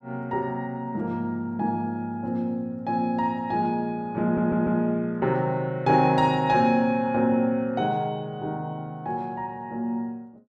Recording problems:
stutter; at 4 s

